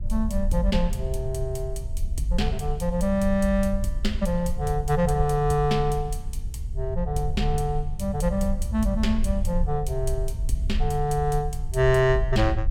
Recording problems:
rumble; below 62 Hz, SNR 5 dB

